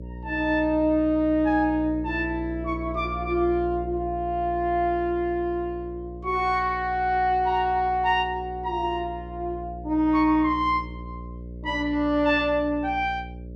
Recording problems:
hum; 60 Hz, harmonics up to 600 Hz, SNR 13 dB

